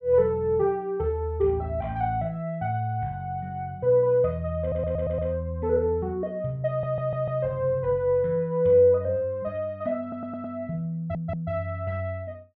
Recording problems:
audio stuttering; 4 times, first at 4.5 s

